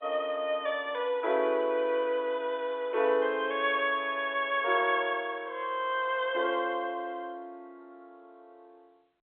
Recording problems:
telephone audio; 300 Hz to 3.6 kHz, G.711

